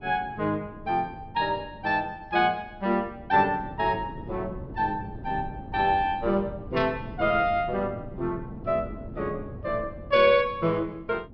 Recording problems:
low-pass filter; nothing above 5.5 kHz
wind noise; below 270 Hz, SNR 15 dB

